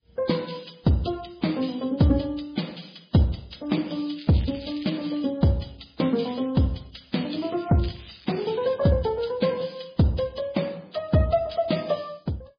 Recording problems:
lossy codec; MP3, then Vorbis, log-spectral distance 9 dB, nothing above 5 kHz
crackle; from 4 to 5 s, at 6 s and from 7 to 8.5 s; loose cable, SNR 19 dB

